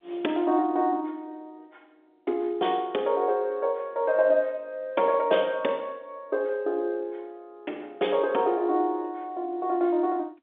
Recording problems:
telephone audio; 240 Hz to 3.6 kHz, G.711

